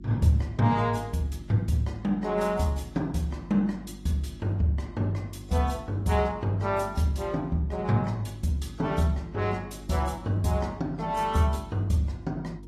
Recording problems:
lossy compression; AAC, log-spectral distance 2 dB, nothing above 13.5 kHz
hum; 50 Hz, harmonics up to 350 Hz, SNR 17 dB

